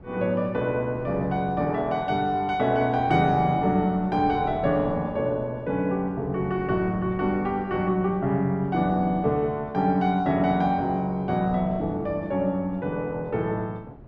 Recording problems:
wind noise; below 360 Hz, SNR 18 dB

